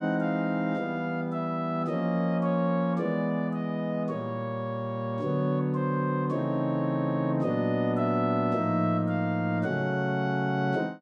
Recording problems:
none

